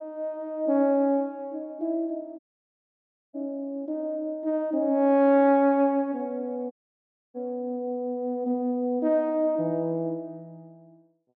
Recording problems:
audio cutting out; at 2.5 s for 1 s and at 6.5 s for 0.5 s

